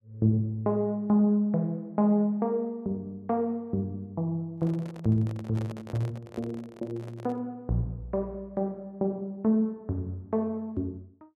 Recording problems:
microphone handling noise; from 4.5 to 7.5 s; peak -9 dB vs average level

